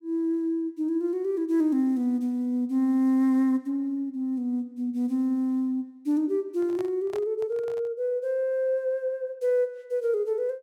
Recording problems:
microphone handling noise; from 6.5 to 8 s; peak -11 dB vs average level

